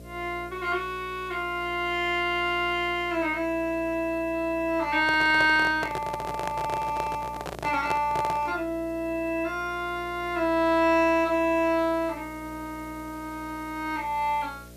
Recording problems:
electrical hum; 60 Hz, harmonics up to 660 Hz, SNR 20 dB
hiss; slope 0 dB per octave, SNR 28 dB
microphone handling noise; from 5 to 8.5 s; peak -1 dB vs average level

